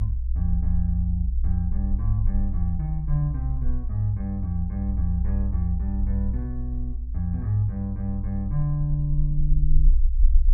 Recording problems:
low-frequency rumble; below 60 Hz, strongest tone 20 Hz, SNR -1 dB

